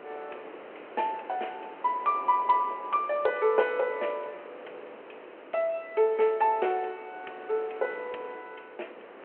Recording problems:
phone line; 320 Hz to 3.1 kHz, G.726
wind noise; below 1.3 kHz, SNR 18 dB

